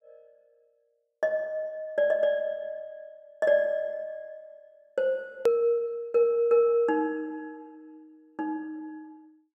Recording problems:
click at an edit; at 5.5 s

